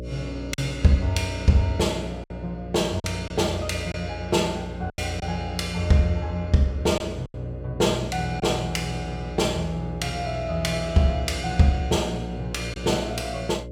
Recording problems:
electrical hum; 60 Hz, harmonics up to 600 Hz, SNR 10 dB
packet loss; 3% of the sound replaced, filled with silence

